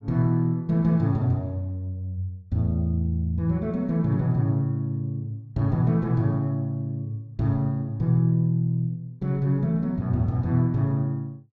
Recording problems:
none

